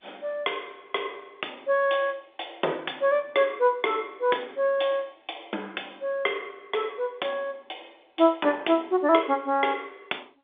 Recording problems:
phone line; 260 Hz to 3.6 kHz, G.711

